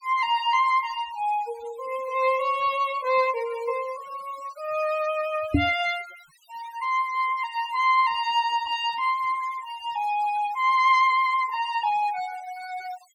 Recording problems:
noise reduction artefacts; signal-to-artefact ratio 18 dB
microphone bump; at 5.5 s; peak +7 dB vs average level

